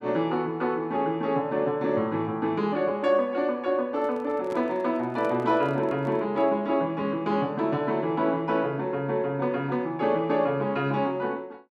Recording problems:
handling noise; from 4 to 6.5 s; peak -9 dB vs average level

